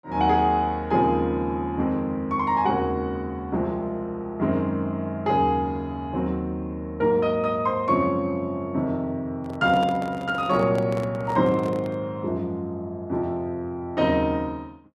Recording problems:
handling noise; from 9.5 to 12 s; peak -4 dB vs average level

